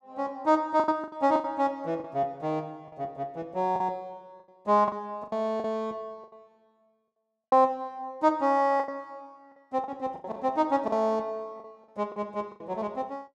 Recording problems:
lost packets; 10% of the sound replaced, filled with the last packet

